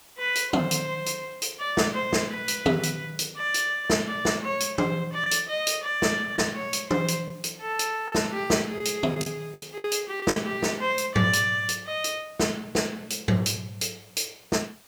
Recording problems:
background hiss; slope -1 dB per octave, SNR 26 dB
lost packets; 3% of the sound replaced, filled with the last packet

